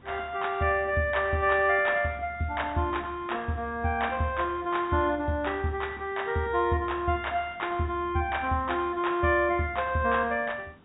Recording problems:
treble cut off; nothing above 4 kHz
hiss; SNR 27 dB

